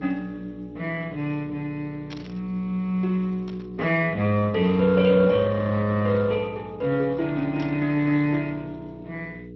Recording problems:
codec artefacts; MP2, then Speex, log-spectral distance 3 dB
hum; 60 Hz, harmonics up to 480 Hz, SNR 16 dB
static burst; at 2 s, at 3.5 s and at 7.5 s; peak -11 dB vs average level

